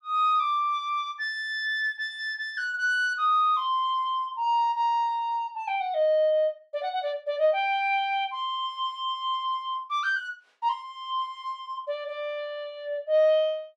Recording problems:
none

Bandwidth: 12 kHz